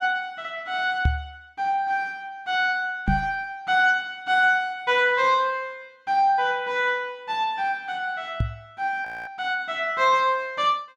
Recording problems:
microphone bump; at 1 s, at 3 s and at 8.5 s; peak +5 dB vs average level
audio freezing; at 9 s

